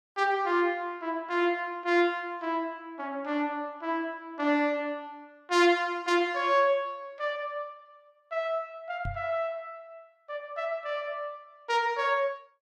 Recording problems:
microphone thump; at 9 s; peak -4 dB vs average level

